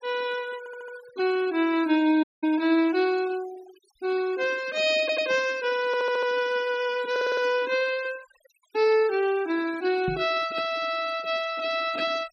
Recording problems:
noise reduction artefacts; signal-to-artefact ratio 18 dB
audio stuttering; 4 times, first at 0.5 s
audio cutting out; at 2 s
knock on the microphone; at 10 s; peak -4 dB vs average level

